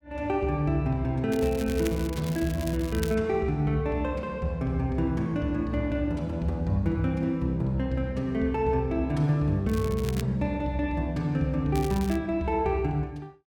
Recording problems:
crackling; from 1.5 to 3 s, at 9.5 s and at 12 s; loose cable, SNR 15 dB

